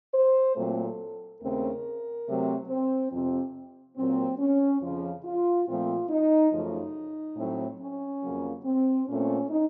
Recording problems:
treble cut off; nothing above 6.6 kHz

